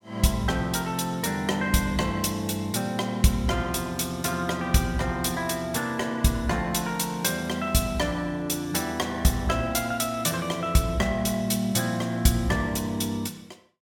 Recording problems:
none

